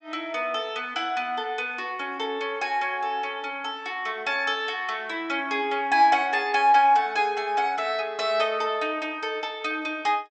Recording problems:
treble missing; nothing above 8 kHz

